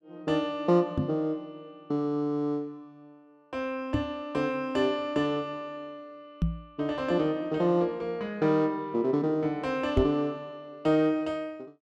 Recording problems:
microphone thump; 4 times, first at 1 s; peak +5 dB vs average level

